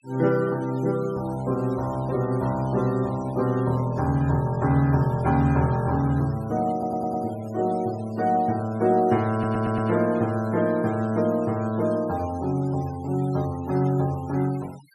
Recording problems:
noise reduction artefacts; signal-to-artefact ratio 22 dB
audio stuttering; at 6.5 s and at 9.5 s

